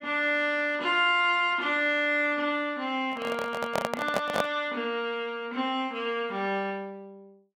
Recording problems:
handling noise; from 3 to 4.5 s; peak +3 dB vs average level

